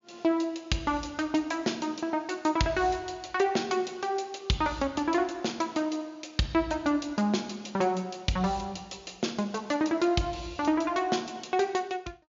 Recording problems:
low-pass filter; nothing above 7.1 kHz

